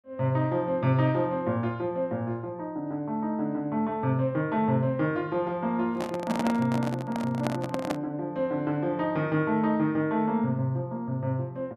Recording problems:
microphone handling noise; from 6 to 8 s; peak +1 dB vs average level

